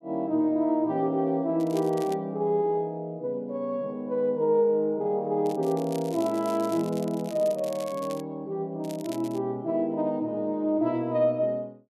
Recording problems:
crackle; at 1.5 s, from 5.5 to 8 s and at 9 s; loose cable, SNR 20 dB

